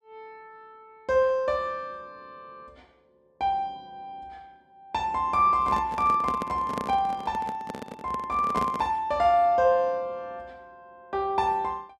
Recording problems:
handling noise; from 5.5 to 9 s; peak -2 dB vs average level

